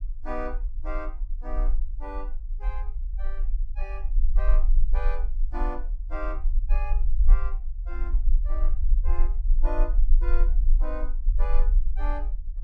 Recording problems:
low-frequency rumble; below 38 Hz, strongest tone 20 Hz, SNR -11 dB

